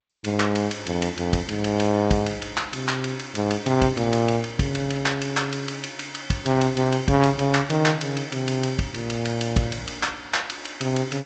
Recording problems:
lossy codec; Vorbis, then G.722, log-spectral distance 4 dB, nothing above 7.8 kHz

